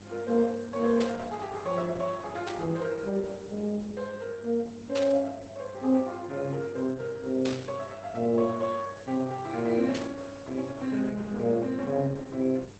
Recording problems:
lossy codec; Opus, log-spectral distance 5 dB
hum; 50 Hz, harmonics up to 1.2 kHz, SNR 23 dB
background hiss; slope -3 dB per octave, SNR 24 dB
burst of static; 5 times, first at 1 s; peak -3 dB vs average level

